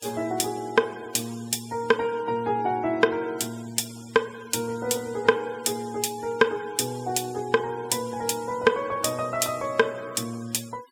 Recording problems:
denoising artefacts; signal-to-artefact ratio 22 dB

